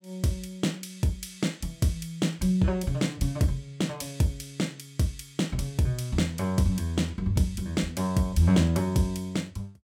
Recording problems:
none

